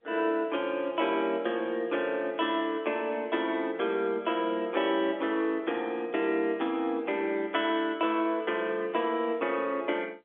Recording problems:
telephone audio; 260 Hz to 3.6 kHz, G.711

